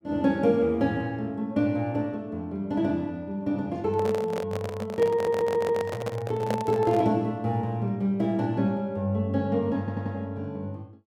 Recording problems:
handling noise; from 4 to 7 s; peak +1 dB vs average level
stutter; at 5 s and at 10 s

